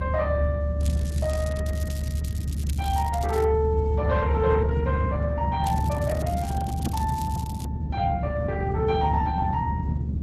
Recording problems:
codec artefacts; Opus, log-spectral distance 3 dB
low-frequency rumble; below 130 Hz, strongest tone 72 Hz, SNR -1 dB
crackling; from 1 to 3.5 s and from 5.5 to 7.5 s; loose cable, SNR 15 dB

